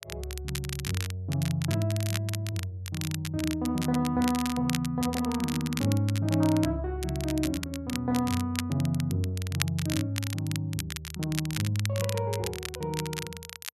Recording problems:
crackle; vinyl, SNR 8 dB

